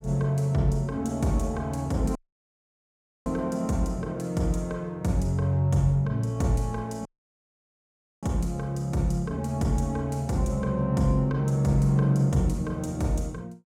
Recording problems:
audio cutting out; at 2 s for 1 s and at 7 s for 1 s

